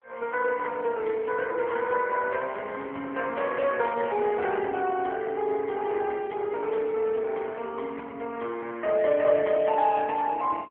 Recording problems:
phone line; 300 Hz to 3.1 kHz, AMR-NB

